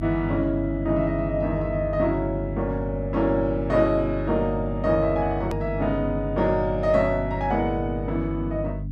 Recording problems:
hum; 50 Hz, harmonics up to 300 Hz, SNR 7 dB
click at an edit; at 5.5 s

